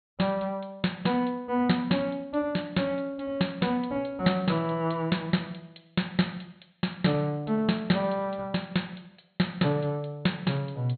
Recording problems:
treble missing; nothing above 4.2 kHz

